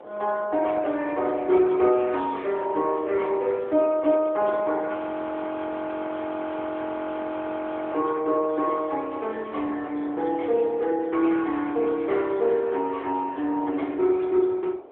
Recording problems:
telephone audio; 280 Hz to 3.4 kHz, AMR-NB
wind noise; below 720 Hz, SNR 19 dB
audio freezing; at 5 s for 3 s

